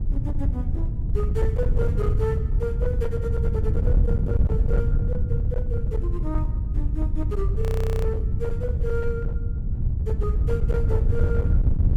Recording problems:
distortion; hard clipping, uneven, signal-to-distortion ratio 11 dB
wind on the microphone; below 98 Hz, SNR -7 dB
frozen audio; at 7.5 s

